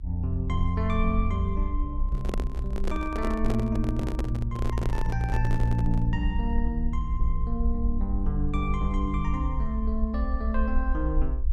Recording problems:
rumble; below 60 Hz, SNR 1 dB
microphone handling noise; from 2 to 6 s; peak +2 dB vs average level

